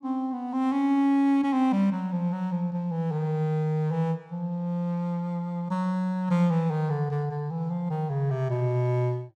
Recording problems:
none

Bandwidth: 15 kHz